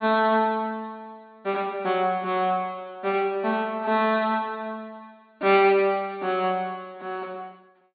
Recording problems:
low-pass filter; nothing above 4.6 kHz

